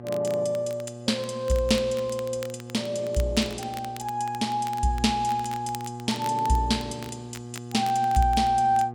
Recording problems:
electrical hum; 60 Hz, harmonics up to 1.2 kHz, SNR 13 dB
crackling; vinyl, SNR 19 dB

